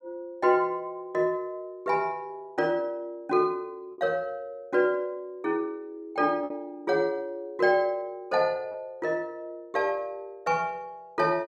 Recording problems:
lost packets; 1.2% of the sound replaced, filled with repeated pitch periods

